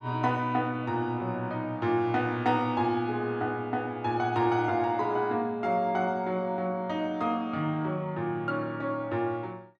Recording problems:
none

